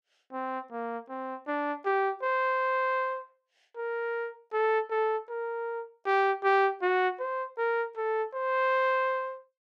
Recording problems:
none

